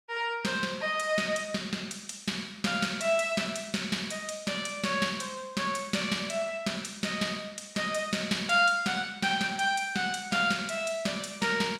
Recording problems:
none

